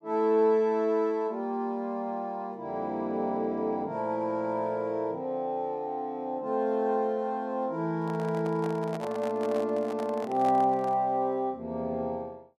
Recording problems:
microphone handling noise; from 8 to 11 s; peak -7 dB vs average level

